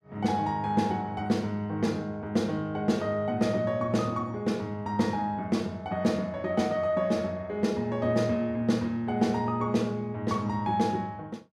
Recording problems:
none

